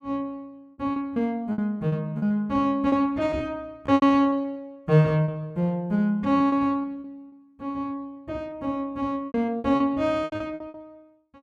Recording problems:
lost packets; 12% of the sound replaced, filled with repeated pitch periods

